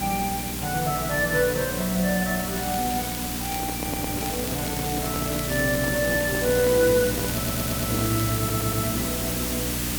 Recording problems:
hum; 60 Hz, harmonics up to 300 Hz, SNR 7 dB
hiss; slope -2 dB per octave, SNR 2 dB
crackle; from 2.5 to 3.5 s and from 4 to 8.5 s; loose cable, SNR 12 dB
microphone handling noise; from 3.5 to 8 s; peak -4 dB vs average level
stutter; at 4 s, at 7.5 s and at 8.5 s

